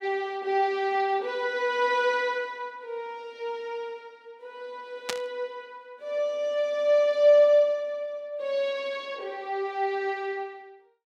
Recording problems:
burst of static; at 5 s; peak +1 dB vs average level

